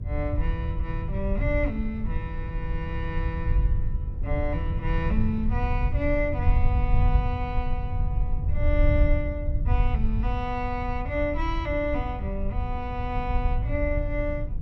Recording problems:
hum; 50 Hz, harmonics up to 550 Hz, SNR 12 dB
rumble; below 84 Hz, SNR -2 dB
wind on the microphone; below 160 Hz, SNR 14 dB

